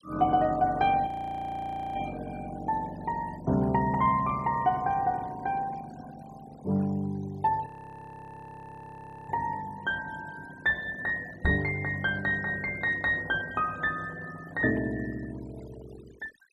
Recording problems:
denoising artefacts; signal-to-artefact ratio 21 dB
audio freezing; at 1 s for 1 s and at 7.5 s for 1.5 s
knock on the microphone; at 11 s; peak +3 dB vs average level

